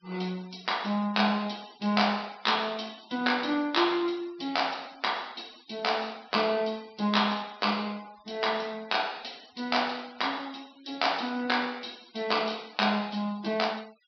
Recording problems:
treble cut off; nothing above 5.5 kHz
noise reduction artefacts; signal-to-artefact ratio 23 dB

